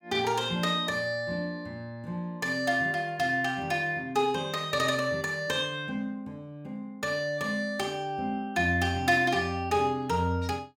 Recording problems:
none

